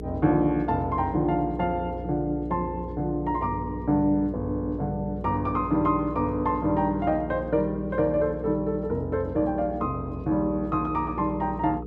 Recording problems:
hum; 60 Hz, harmonics up to 480 Hz, SNR 10 dB

